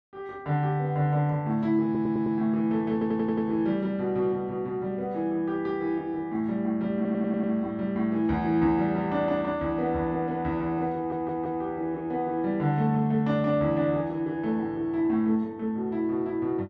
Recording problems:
audio stuttering; 4 times, first at 2 s

